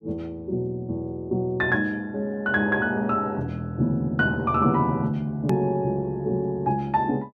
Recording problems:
click at an edit; at 5.5 s

